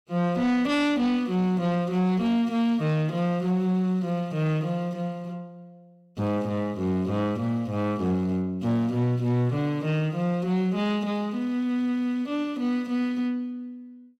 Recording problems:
distorted audio; soft clipping, signal-to-distortion ratio 12 dB

